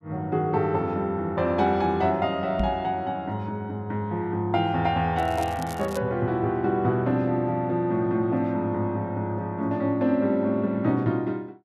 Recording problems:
knock on the microphone; at 2.5 s; peak +4 dB vs average level
crackling; at 5 s; loose cable, SNR 20 dB

